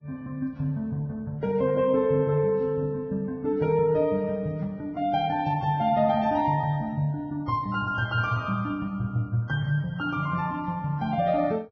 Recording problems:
lossy compression; Vorbis, log-spectral distance 2 dB, nothing above 6 kHz

